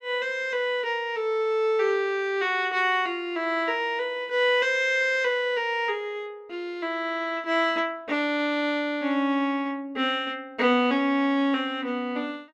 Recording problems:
none

